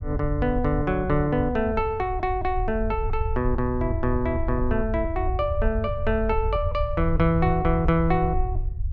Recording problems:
low-frequency rumble; below 82 Hz, SNR 5 dB

